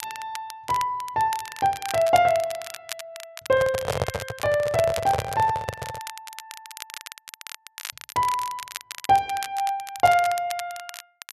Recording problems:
crackling; vinyl, SNR 14 dB
microphone handling noise; from 3.5 to 6 s; peak +3 dB vs average level

